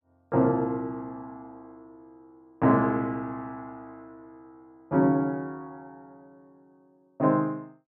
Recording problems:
none

